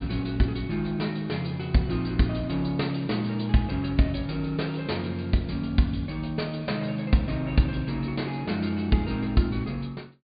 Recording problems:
treble missing; nothing above 4.8 kHz

